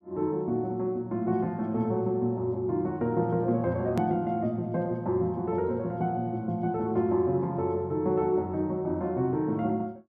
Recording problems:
hard cut with a click; at 4 s

